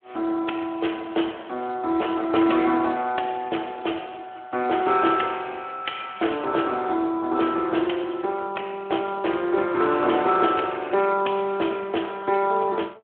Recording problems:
phone line; 280 Hz to 3.3 kHz, Speex

